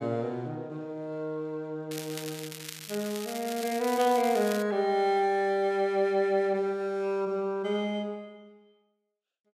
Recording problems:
crackle; from 2 to 4.5 s; loose cable, SNR 11 dB

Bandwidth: 14.5 kHz